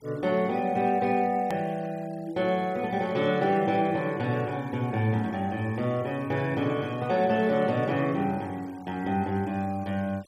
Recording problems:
noise reduction artefacts; signal-to-artefact ratio 25 dB
edit click; at 1.5 s

